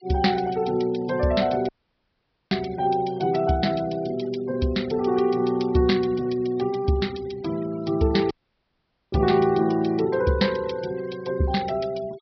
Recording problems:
treble missing; nothing above 5.5 kHz
noise reduction artefacts; signal-to-artefact ratio 22 dB
audio cutting out; at 1.5 s for 1 s and at 8.5 s for 1 s

